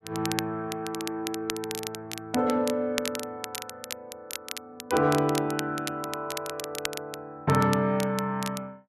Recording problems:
crackle; vinyl, SNR 8 dB

